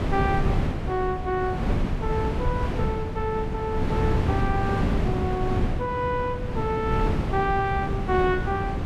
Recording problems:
wind on the microphone; below 260 Hz, SNR -1 dB

